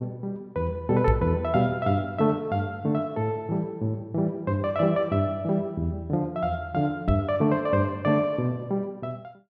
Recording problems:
microphone thump; at 1 s and at 7 s; peak +5 dB vs average level

